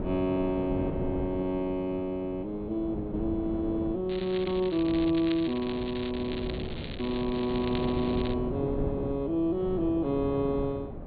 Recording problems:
treble cut off; nothing above 4.3 kHz
wind on the microphone; below 360 Hz, SNR 8 dB
crackling; from 4 to 8.5 s; loose cable, SNR 13 dB

